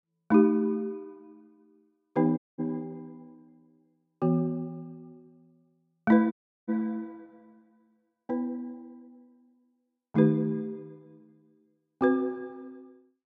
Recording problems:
dropout; at 2.5 s and at 6.5 s

